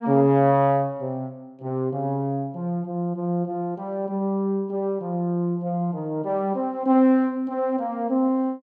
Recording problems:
none

